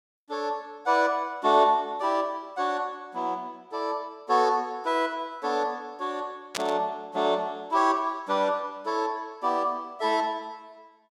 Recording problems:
burst of static; at 6.5 s; peak +2 dB vs average level

